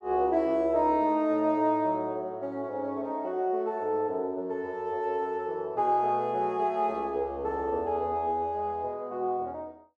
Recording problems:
none

